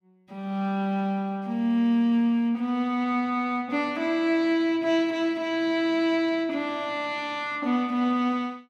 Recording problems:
none

